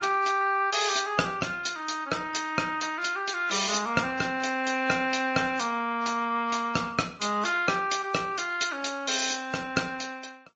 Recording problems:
codec artefacts; MP3, then Opus, log-spectral distance 5 dB, nothing above 7.1 kHz

